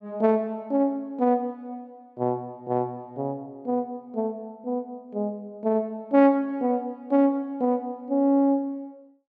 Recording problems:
none

